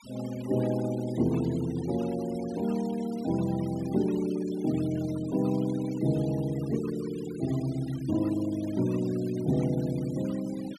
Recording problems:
noise reduction artefacts; signal-to-artefact ratio 19 dB

